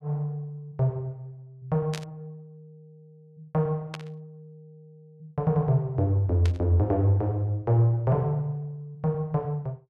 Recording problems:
static burst; at 2 s, at 4 s and at 6.5 s; peak -6 dB vs average level

